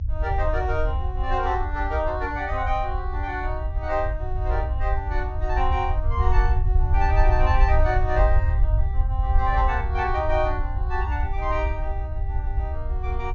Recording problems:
low-pass filter; nothing above 7 kHz
rumble; below 70 Hz, SNR -1 dB

